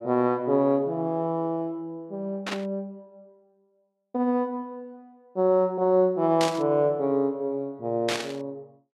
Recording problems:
static burst; at 2.5 s, at 6.5 s and at 8 s; peak +1 dB vs average level

